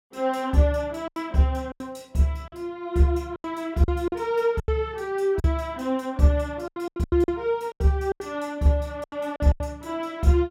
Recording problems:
packet loss; 11% of the sound replaced, filled with silence

